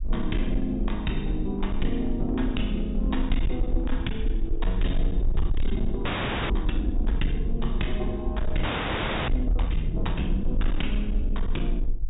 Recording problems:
treble missing; nothing above 4 kHz
distortion; hard clipping, signal-to-distortion ratio 11 dB
low-frequency rumble; below 44 Hz, SNR 0 dB
audio freezing; at 6 s and at 8.5 s for 0.5 s

